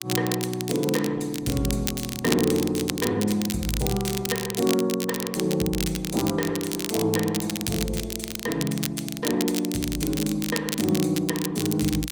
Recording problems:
lossy compression; Opus, log-spectral distance 3 dB, nothing above 19 kHz
crackling; vinyl, SNR 6 dB

